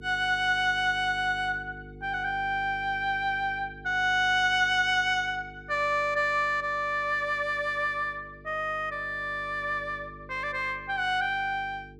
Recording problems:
electrical hum; 50 Hz, harmonics up to 450 Hz, SNR 21 dB

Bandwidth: 14 kHz